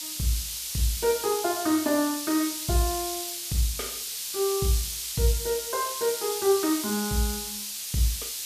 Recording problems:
background hiss; SNR 3 dB

